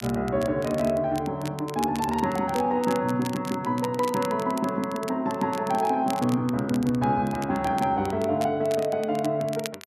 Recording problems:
crackling; vinyl, SNR 17 dB

